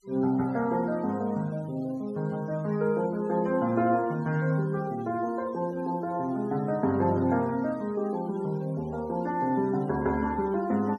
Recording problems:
noise reduction artefacts; signal-to-artefact ratio 24 dB

